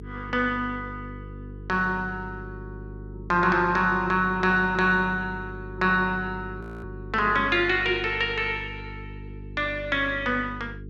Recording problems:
mains hum; 50 Hz, harmonics up to 450 Hz, SNR 15 dB
audio freezing; at 6.5 s

